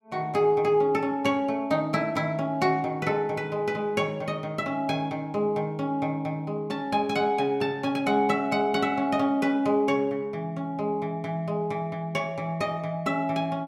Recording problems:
none

